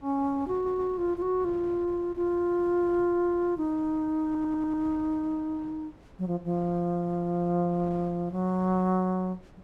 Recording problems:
wind on the microphone; below 540 Hz, SNR 22 dB
audio stuttering; at 0.5 s and at 4.5 s

